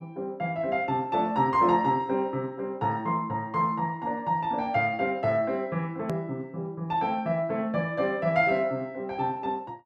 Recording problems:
click at an edit; at 6 s

